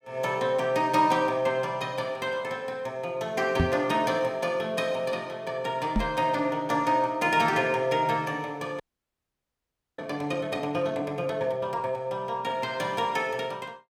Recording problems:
knock on the microphone; at 3.5 s and at 6 s; peak +6 dB vs average level
audio freezing; at 9 s for 1 s

